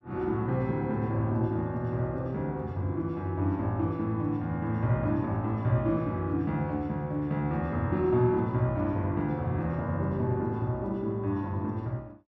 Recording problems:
none

